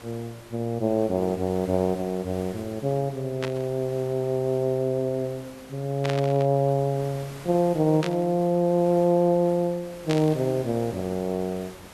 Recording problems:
background hiss; slope -4 dB per octave, SNR 20 dB
burst of static; 4 times, first at 3.5 s; peak -3 dB vs average level

